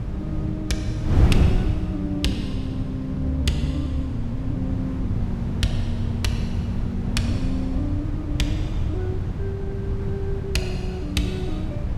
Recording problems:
wind noise; below 150 Hz, SNR -1 dB

